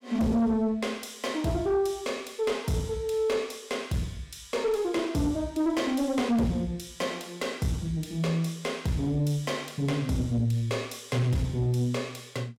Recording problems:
distorted audio; soft clipping, signal-to-distortion ratio 11 dB

